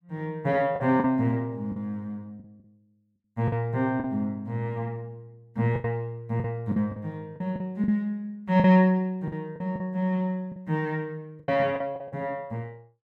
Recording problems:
packet loss; 8% of the sound replaced, filled with the last packet

